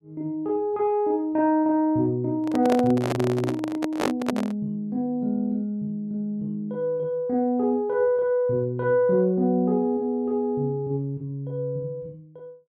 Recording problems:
handling noise; from 2.5 to 4.5 s; peak +2 dB vs average level

